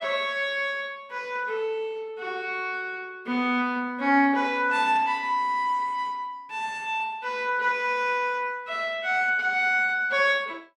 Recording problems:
none

